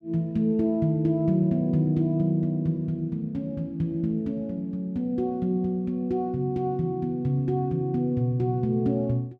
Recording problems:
none

